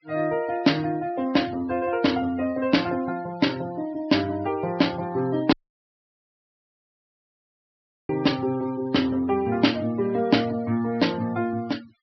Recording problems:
low-pass filter; nothing above 5.5 kHz
denoising artefacts; signal-to-artefact ratio 21 dB
audio cutting out; at 5.5 s for 2.5 s

